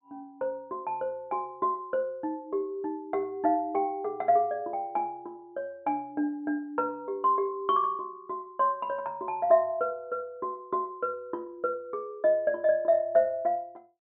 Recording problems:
low-pass filter; nothing above 4 kHz

